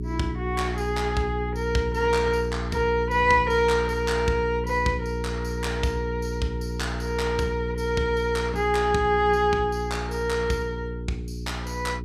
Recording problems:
electrical hum; 60 Hz, harmonics up to 420 Hz, SNR 6 dB

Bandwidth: 15.5 kHz